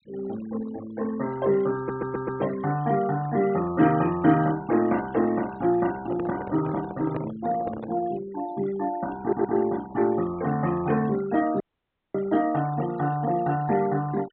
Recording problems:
treble cut off; nothing above 4 kHz
noise reduction artefacts; signal-to-artefact ratio 18 dB
audio stuttering; at 2 s and at 9 s
microphone handling noise; from 6 to 8 s; peak -3 dB vs average level
dropout; at 12 s for 0.5 s

